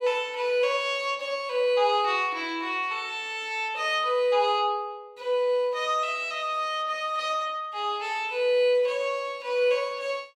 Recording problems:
none

